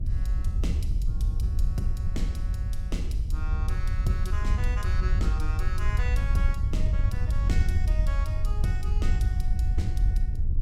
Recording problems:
wind noise; below 74 Hz, SNR -10 dB

